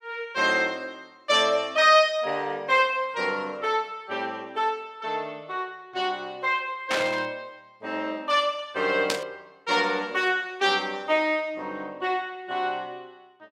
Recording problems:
burst of static; at 7 s and at 9 s; peak +3 dB vs average level

